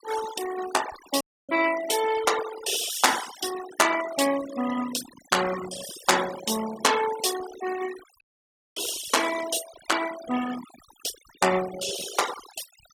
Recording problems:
denoising artefacts; signal-to-artefact ratio 10 dB
dropout; at 1 s and at 8 s for 0.5 s

